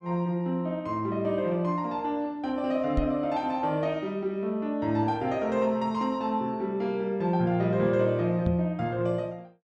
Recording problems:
knock on the microphone; at 3 s and at 8.5 s; peak +2 dB vs average level

